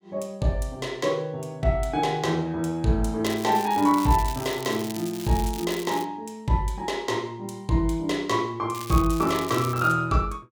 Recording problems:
crackle; from 3 to 6 s and from 8.5 to 10 s; loose cable, SNR 13 dB

